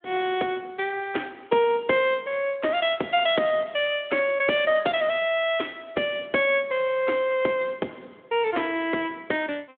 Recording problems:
telephone audio; 260 Hz to 3.5 kHz, Speex

